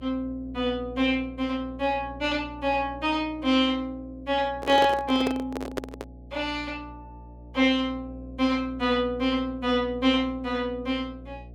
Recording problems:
electrical hum; 60 Hz, harmonics up to 720 Hz, SNR 18 dB
microphone handling noise; from 4.5 to 6 s; peak +1 dB vs average level

